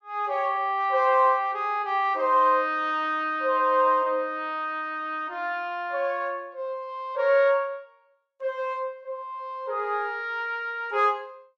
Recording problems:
none

